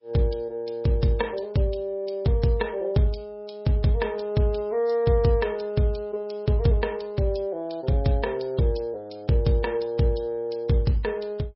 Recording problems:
lossy compression; MP3, log-spectral distance 2 dB, nothing above 5.5 kHz

